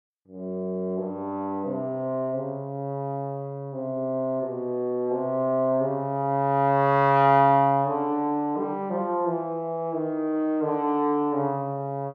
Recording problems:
none

